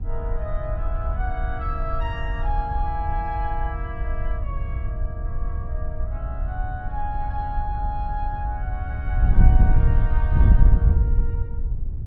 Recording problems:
wind on the microphone; below 72 Hz, SNR -8 dB

